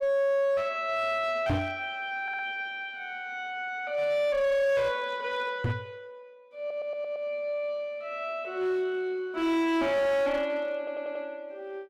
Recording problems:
distorted audio; hard clipping, uneven, signal-to-distortion ratio 10 dB
microphone thump; at 1.5 s and at 5.5 s; peak +5 dB vs average level
audio stuttering; at 2 s, at 6.5 s and at 11 s

